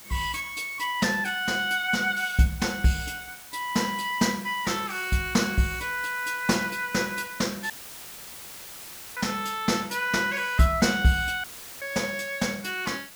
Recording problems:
background hiss; slope 0 dB per octave, SNR 16 dB
audio cutting out; at 7.5 s for 1.5 s and at 11 s; filled with static

